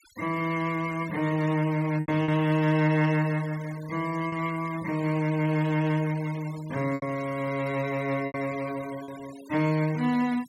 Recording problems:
denoising artefacts; signal-to-artefact ratio 19 dB
packet loss; 3% of the sound replaced, filled with repeated pitch periods

